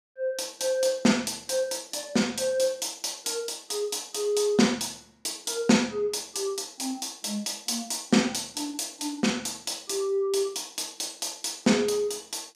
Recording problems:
none

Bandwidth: 15.5 kHz